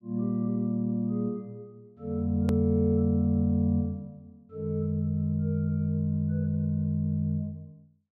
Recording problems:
click at an edit; at 2.5 s

